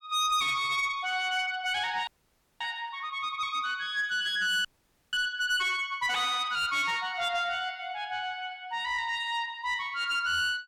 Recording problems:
distorted audio; soft clipping, signal-to-distortion ratio 12 dB
frozen audio; at 2 s for 0.5 s and at 4.5 s
static burst; at 6 s; peak -7 dB vs average level

